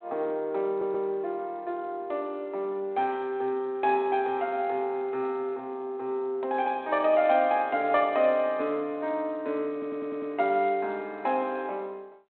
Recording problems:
telephone audio; 220 Hz to 3.3 kHz, G.726
audio stuttering; at 0.5 s and at 9.5 s

